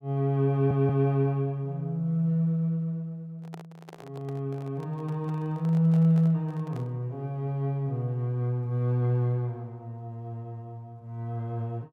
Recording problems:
audio stuttering; at 0.5 s
handling noise; from 3.5 to 7 s; peak -12 dB vs average level

